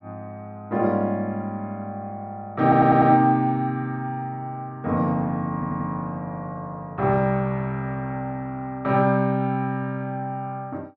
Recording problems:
audio stuttering; at 2.5 s and at 5.5 s

